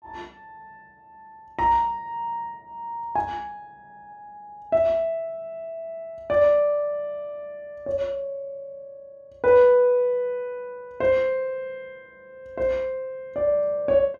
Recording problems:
none

